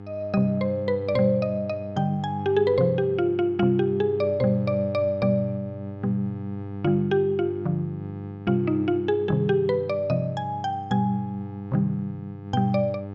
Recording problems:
mains hum; 50 Hz, harmonics up to 1.3 kHz, SNR 12 dB

